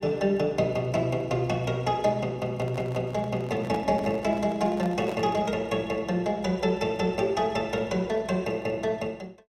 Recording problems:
microphone handling noise; from 2.5 to 5.5 s; peak -5 dB vs average level

